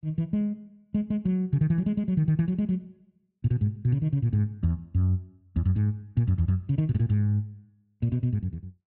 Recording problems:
none

